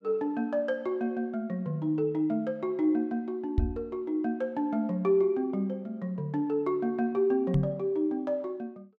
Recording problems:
knock on the microphone; at 3.5 s and at 7.5 s; peak +7 dB vs average level

